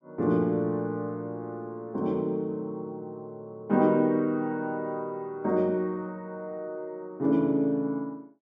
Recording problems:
none

